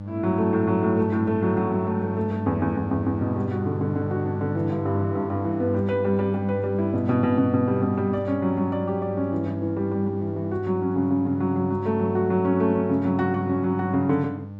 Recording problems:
hum; 50 Hz, harmonics up to 900 Hz, SNR 7 dB

